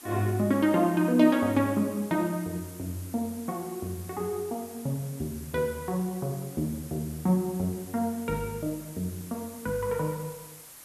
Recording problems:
background hiss; slope -1 dB per octave, SNR 17 dB

